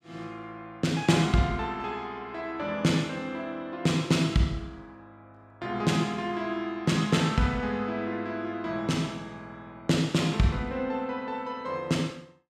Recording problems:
none

